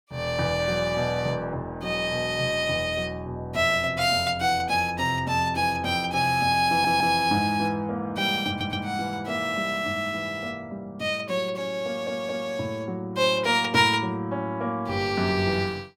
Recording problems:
stutter; at 6.5 s, at 8.5 s and at 12 s

